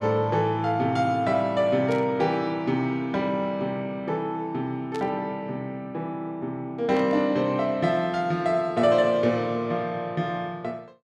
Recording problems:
burst of static; at 2 s, at 5 s and at 7 s; peak -11 dB vs average level

